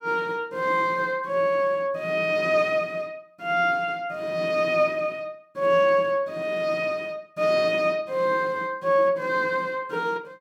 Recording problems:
none

